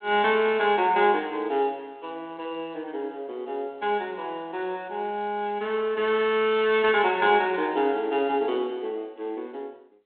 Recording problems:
telephone audio; 240 Hz to 3.7 kHz, G.726

